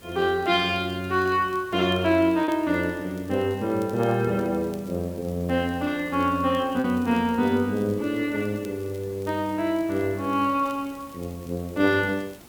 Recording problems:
background hiss; SNR 23 dB
crackling; vinyl, SNR 30 dB
lost packets; 0.6% of the sound replaced, filled with repeated pitch periods

